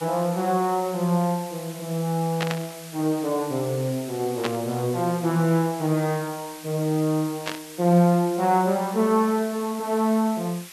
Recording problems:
background hiss; slope +2 dB per octave, SNR 16 dB
burst of static; at 2.5 s, at 4.5 s and at 7.5 s; peak 0 dB vs average level

